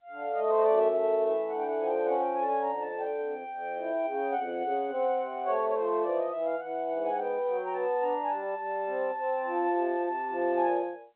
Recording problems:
telephone audio; 300 Hz to 3.5 kHz, G.711

